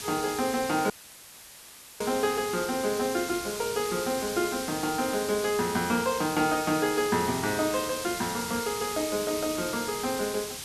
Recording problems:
hiss; slope +1 dB per octave, SNR 7 dB
audio cutting out; at 1 s for 1 s; filled with static

